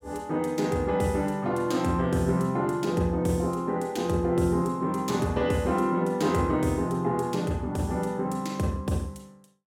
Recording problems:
none

